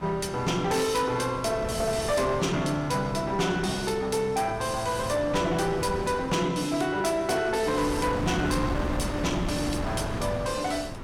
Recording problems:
distortion; soft clipping, signal-to-distortion ratio 12 dB
wind noise; below 680 Hz, SNR 8 dB

